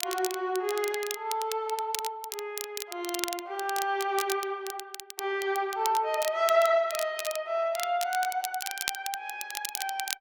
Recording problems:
crackling; vinyl, SNR 7 dB

